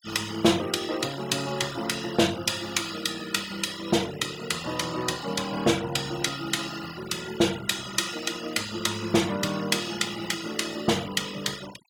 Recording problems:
noise reduction artefacts; signal-to-artefact ratio 14 dB

